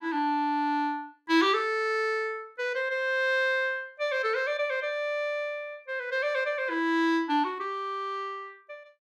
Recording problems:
none

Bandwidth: 14.5 kHz